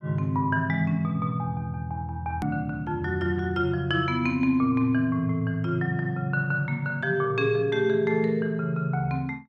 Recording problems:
click at an edit; at 2.5 s

